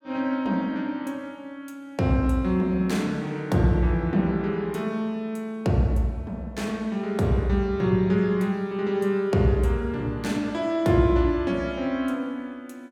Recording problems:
none

